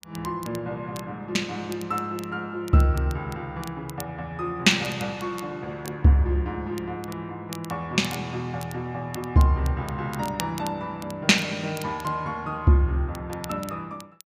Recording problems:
crackle; vinyl, SNR 18 dB

